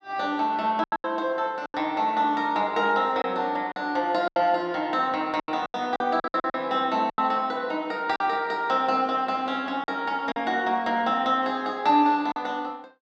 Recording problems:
lost packets; 8% of the sound replaced, filled with silence

